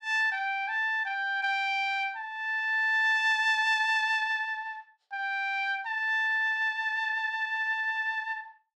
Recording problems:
none

